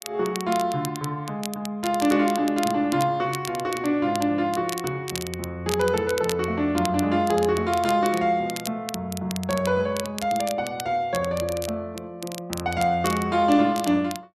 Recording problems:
crackling; vinyl, SNR 13 dB

